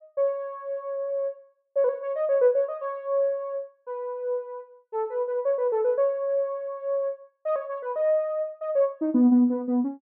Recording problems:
none

